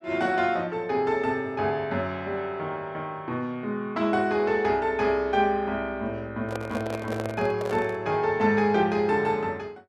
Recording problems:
handling noise; from 6.5 to 8 s; peak -3 dB vs average level

